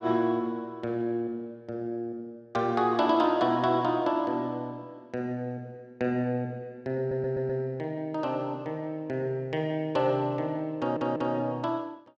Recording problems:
stutter; at 7 s and at 11 s

